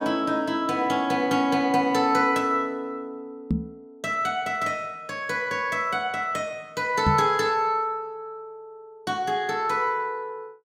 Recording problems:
knock on the microphone; at 3.5 s and at 7 s; peak +5 dB vs average level

